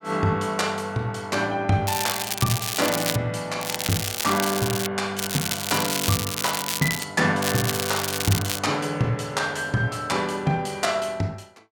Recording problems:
crackling; 4 times, first at 2 s; loose cable, SNR 2 dB

